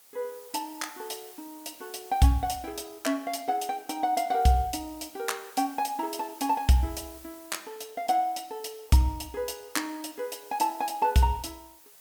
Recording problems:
background hiss; slope 0 dB per octave, SNR 20 dB

